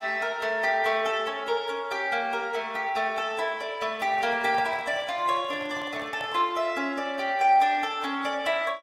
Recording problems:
lossy compression; AAC, log-spectral distance 2 dB, nothing above 14.7 kHz
microphone handling noise; from 4 to 6.5 s; peak -8 dB vs average level

